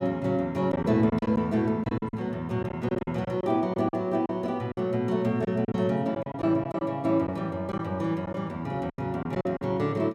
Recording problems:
packet loss; 9% of the sound replaced, filled with silence

